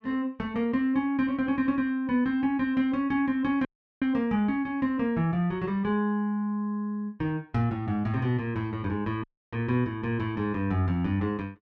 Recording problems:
audio cutting out; at 3.5 s and at 9 s

